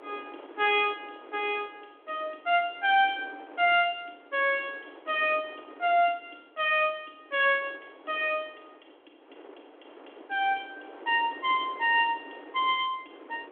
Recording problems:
phone line; 260 Hz to 3.4 kHz, G.726
wind on the microphone; below 850 Hz, SNR 22 dB

